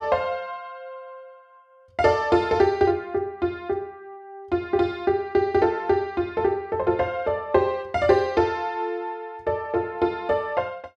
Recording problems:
none

